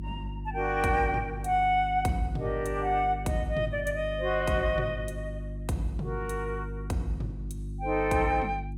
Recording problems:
hum; 50 Hz, harmonics up to 350 Hz, SNR 8 dB

